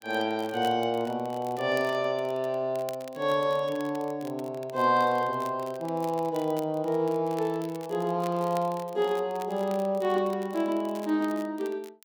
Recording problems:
crackling; vinyl, SNR 22 dB

